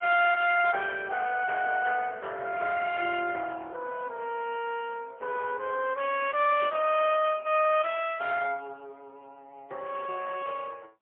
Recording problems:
phone line; 320 Hz to 3.5 kHz, AMR-NB, then MP3

